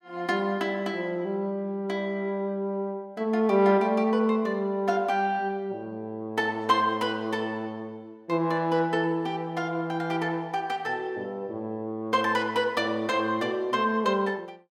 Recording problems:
none

